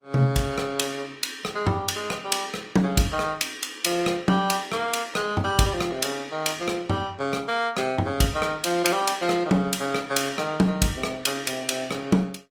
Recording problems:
lossy compression; Opus, log-spectral distance 4 dB, nothing above 18.5 kHz

